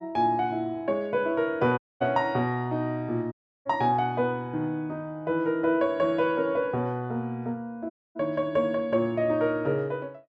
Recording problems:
dropout; at 2 s, at 3.5 s and at 8 s

